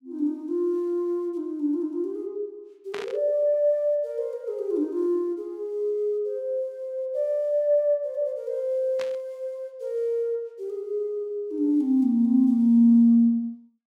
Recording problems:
burst of static; at 3 s and at 9 s; peak -8 dB vs average level

